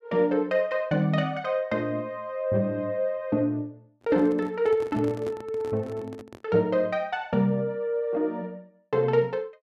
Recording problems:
handling noise; from 4 to 6.5 s; peak -8 dB vs average level

